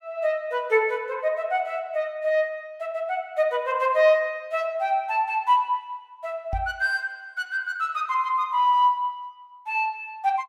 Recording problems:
microphone bump; at 6.5 s; peak -3 dB vs average level

